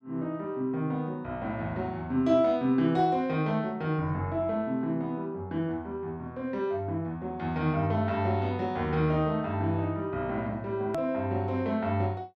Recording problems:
edit click; at 11 s

